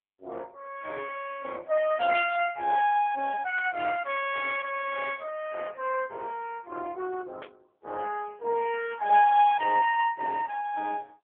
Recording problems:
phone line; 280 Hz to 3.3 kHz, AMR-NB
burst of static; at 3.5 s and at 7.5 s; peak -11 dB vs average level

